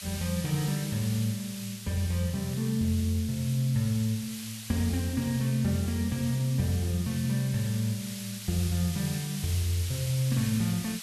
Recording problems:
hiss; slope +4 dB per octave, SNR 10 dB

